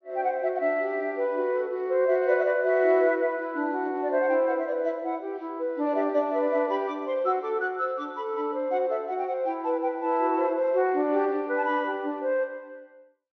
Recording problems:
treble missing; nothing above 6.2 kHz

